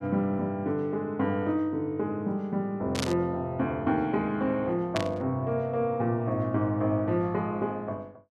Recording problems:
burst of static; at 3 s and at 5 s; peak +1 dB vs average level

